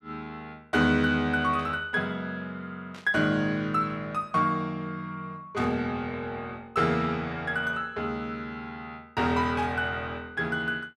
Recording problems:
static burst; 4 times, first at 1.5 s; peak -14 dB vs average level

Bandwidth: 13 kHz